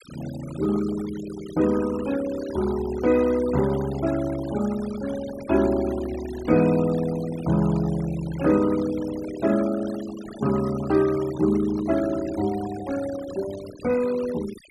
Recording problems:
denoising artefacts; signal-to-artefact ratio 16 dB

